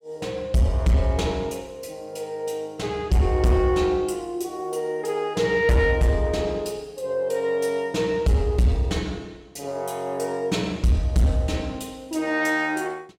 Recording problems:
distorted audio; soft clipping, signal-to-distortion ratio 11 dB

